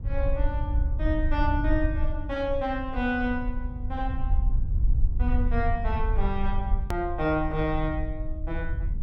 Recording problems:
low-frequency rumble; below 66 Hz, SNR -1 dB
edit click; at 7 s

